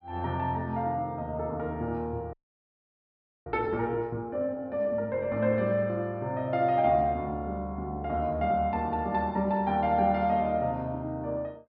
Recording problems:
low-pass filter; nothing above 5.3 kHz
frozen audio; at 2.5 s for 1 s

